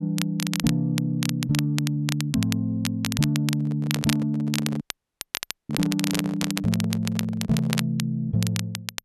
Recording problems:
crackling; vinyl, SNR 7 dB
microphone handling noise; from 3.5 to 8 s; peak -3 dB vs average level
dropout; at 5 s for 1 s

